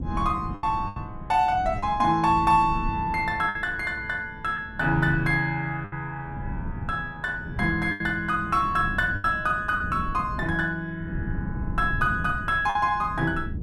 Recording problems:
wind noise; below 170 Hz, SNR 11 dB
lost packets; 4% of the sound replaced, filled with the last packet

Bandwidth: 14.5 kHz